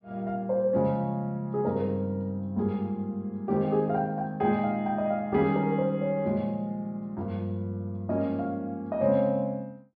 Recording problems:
treble cut off; nothing above 5.5 kHz

